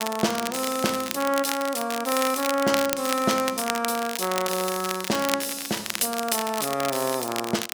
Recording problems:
crackling; vinyl, SNR 6 dB

